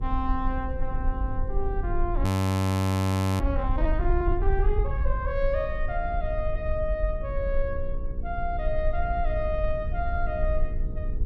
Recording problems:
hum; 60 Hz, harmonics up to 480 Hz, SNR 14 dB
rumble; below 94 Hz, SNR -2 dB
audio freezing; at 2 s for 1 s

